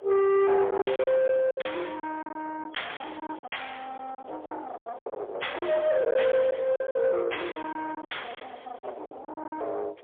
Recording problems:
telephone audio; 390 Hz to 3.4 kHz, AMR-NB, then MP3
distorted audio; soft clipping, signal-to-distortion ratio 8 dB
wind noise; below 870 Hz, SNR 20 dB
lost packets; 13% of the sound replaced, filled with silence

